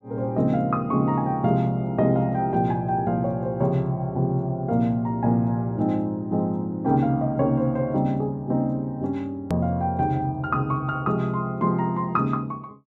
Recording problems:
click at an edit; at 9.5 s

